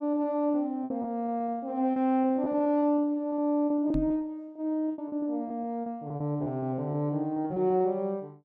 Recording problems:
lost packets; 13% of the sound replaced, filled with repeated pitch periods
knock on the microphone; at 4 s; peak +1 dB vs average level

